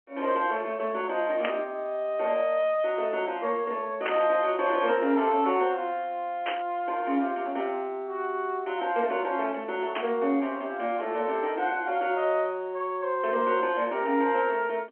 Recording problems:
phone line; 240 Hz to 3.3 kHz, G.711
static burst; 4 times, first at 1.5 s; peak 0 dB vs average level

